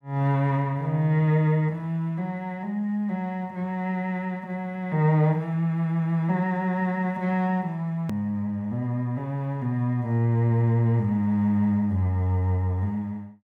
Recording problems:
hard cut with a click; at 8 s

